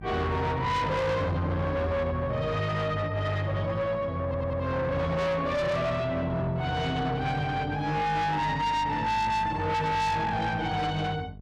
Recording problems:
distorted audio; soft clipping, signal-to-distortion ratio 7 dB
hum; 50 Hz, harmonics up to 650 Hz, SNR 17 dB
audio stuttering; at 4.5 s

